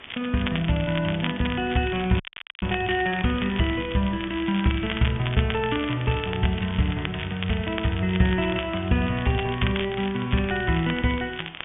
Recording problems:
treble missing; nothing above 3.5 kHz
hiss; SNR 18 dB
crackling; vinyl, SNR 10 dB
dropout; at 2 s

